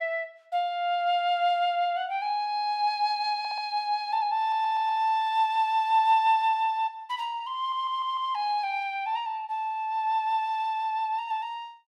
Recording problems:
audio stuttering; at 3.5 s, at 4.5 s and at 7.5 s

